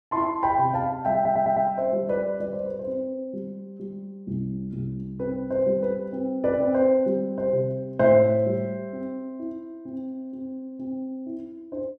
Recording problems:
stutter; at 1 s

